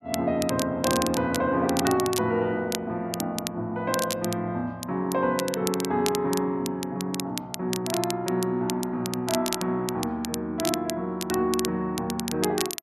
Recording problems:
crackle; vinyl, SNR 7 dB

